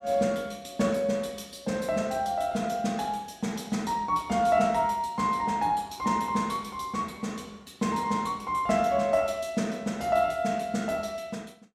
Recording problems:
none

